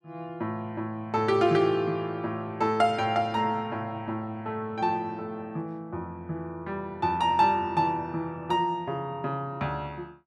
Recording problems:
none

